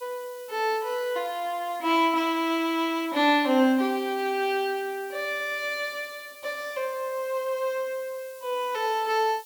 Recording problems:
hiss; slope +9 dB per octave, SNR 20 dB

